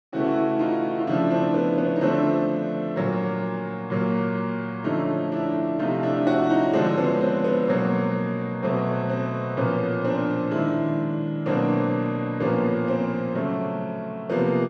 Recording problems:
none

